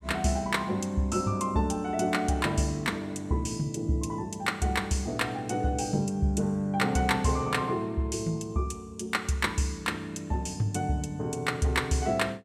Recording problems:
none

